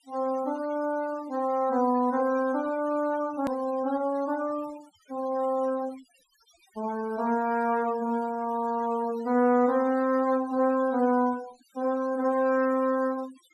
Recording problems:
denoising artefacts; signal-to-artefact ratio 22 dB
click at an edit; at 3.5 s

